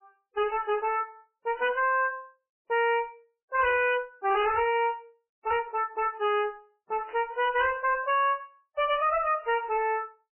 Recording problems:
lossy compression; MP3, log-spectral distance 3 dB, nothing above 2.9 kHz
distorted audio; hard clipping, signal-to-distortion ratio 7 dB
burst of static; at 7 s; peak -16 dB vs average level

